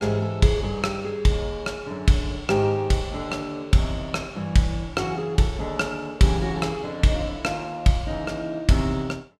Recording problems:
none

